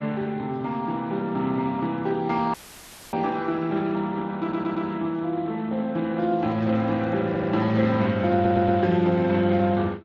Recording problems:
lossy compression; MP3, then Speex, log-spectral distance 3 dB
dropout; at 2.5 s for 0.5 s; filled with static
stutter; at 4.5 s, at 7.5 s and at 8.5 s
microphone handling noise; from 6.5 to 8 s; peak -14 dB vs average level

